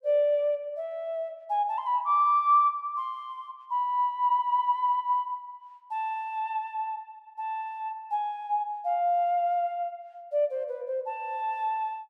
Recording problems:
none

